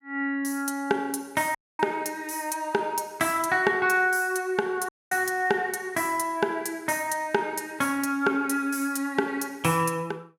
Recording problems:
dropout; at 1.5 s and at 5 s

